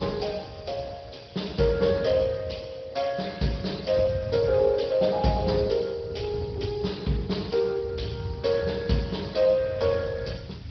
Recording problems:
treble missing; nothing above 5.3 kHz
lossy compression; Speex, log-spectral distance 7 dB
background hiss; SNR 27 dB
wind noise; below 140 Hz, SNR 12 dB

